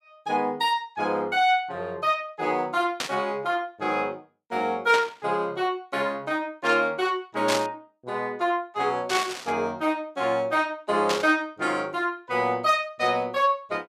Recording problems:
burst of static; 5 times, first at 3 s; peak +2 dB vs average level

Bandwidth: 14.5 kHz